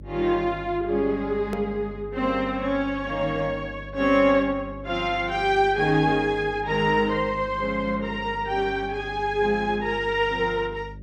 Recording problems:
hum; 50 Hz, harmonics up to 600 Hz, SNR 17 dB
click at an edit; at 1.5 s

